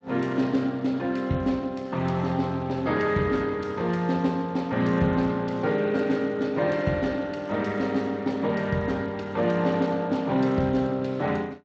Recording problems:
codec artefacts; Speex, log-spectral distance 3 dB

